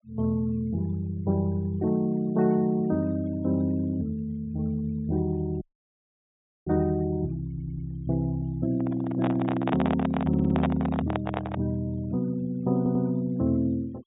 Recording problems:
low-pass filter; nothing above 4 kHz
noise reduction artefacts; signal-to-artefact ratio 28 dB
dropout; at 5.5 s for 1 s
audio stuttering; at 7.5 s, at 10 s and at 13 s
microphone handling noise; from 9 to 12 s; peak +2 dB vs average level

